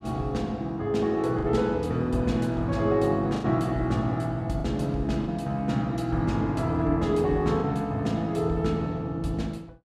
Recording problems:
packet loss; 2% of the sound replaced, filled with the last packet

